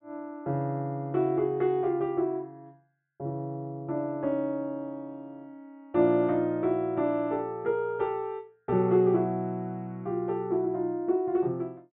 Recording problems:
treble cut off; nothing above 4 kHz

